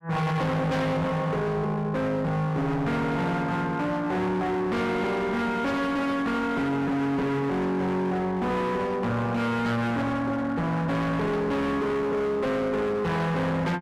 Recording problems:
distortion; hard clipping, signal-to-distortion ratio 7 dB

